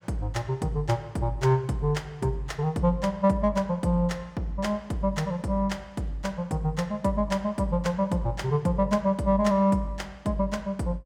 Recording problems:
none

